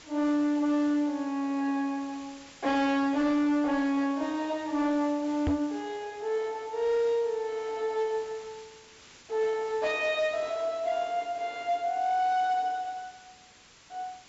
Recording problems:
treble missing; nothing above 8 kHz
distorted audio; hard clipping, signal-to-distortion ratio 12 dB
hiss; slope 0 dB per octave, SNR 22 dB
microphone bump; at 5.5 s; peak +4 dB vs average level

